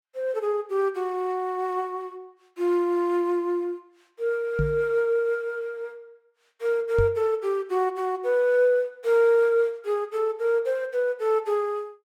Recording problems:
knock on the microphone; at 4.5 s and at 7 s; peak +2 dB vs average level

